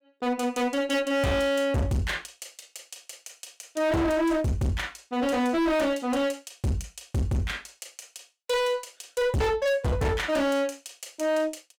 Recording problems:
distortion; hard clipping, signal-to-distortion ratio 6 dB

